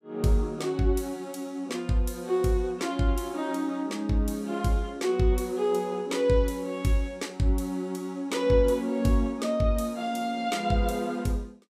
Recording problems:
none

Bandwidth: 15.5 kHz